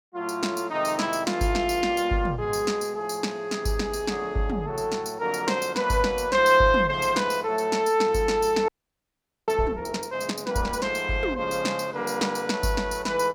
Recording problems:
frozen audio; at 8.5 s for 1 s

